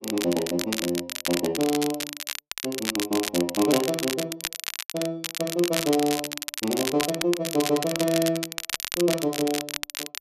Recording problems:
crackle; vinyl, SNR 4 dB

